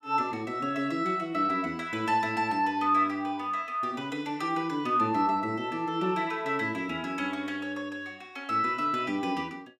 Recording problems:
none

